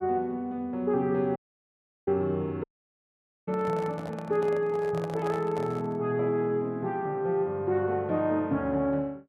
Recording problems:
dropout; at 1.5 s for 0.5 s and at 2.5 s for 1 s
handling noise; from 3.5 to 6 s; peak -6 dB vs average level

